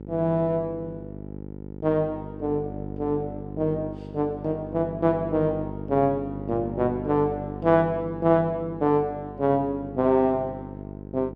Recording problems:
hum; 50 Hz, harmonics up to 900 Hz, SNR 11 dB

